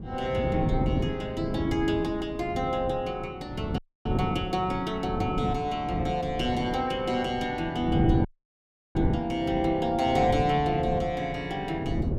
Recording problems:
wind noise; below 250 Hz, SNR 4 dB
audio cutting out; at 4 s and at 8.5 s for 0.5 s

